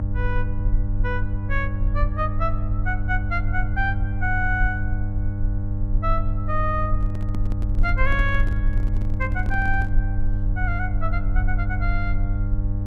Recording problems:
electrical hum; 50 Hz, harmonics up to 800 Hz, SNR 0 dB
rumble; below 46 Hz, SNR 0 dB
handling noise; from 7 to 10 s; peak -3 dB vs average level

